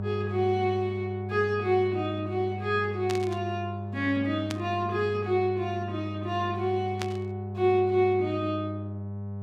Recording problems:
hum; 50 Hz, harmonics up to 800 Hz, SNR 7 dB
static burst; at 3 s, at 4.5 s and at 7 s; peak -2 dB vs average level

